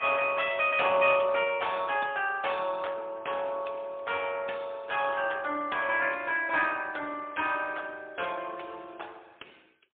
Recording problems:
phone line; 300 Hz to 3.5 kHz, AMR-NB, then MP3

